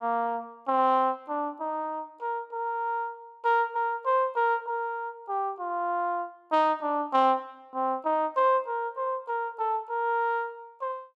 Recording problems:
none

